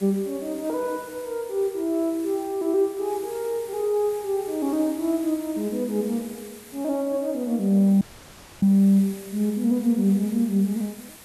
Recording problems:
hiss; slope -2 dB per octave, SNR 20 dB
audio cutting out; at 8 s for 0.5 s

